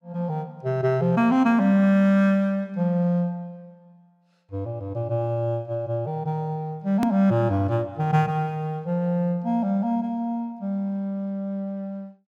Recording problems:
click at an edit; at 7 s

